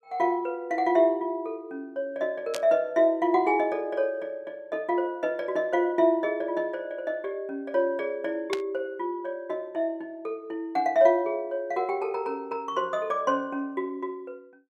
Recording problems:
burst of static; at 2.5 s and at 8.5 s; peak -1 dB vs average level

